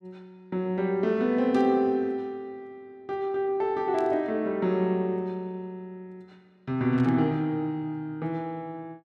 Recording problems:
burst of static; at 1.5 s, at 4 s and at 7 s; peak -14 dB vs average level

